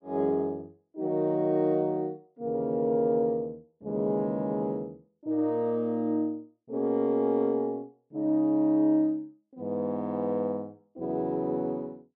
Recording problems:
none

